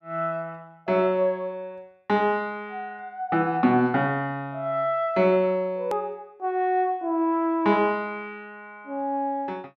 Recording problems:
hard cut with a click; at 6 s

